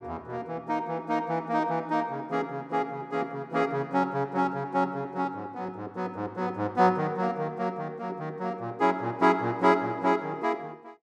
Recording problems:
none

